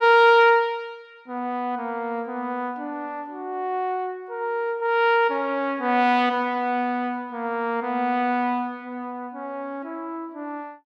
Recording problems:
none

